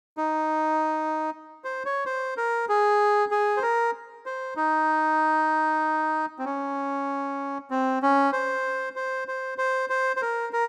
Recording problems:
none

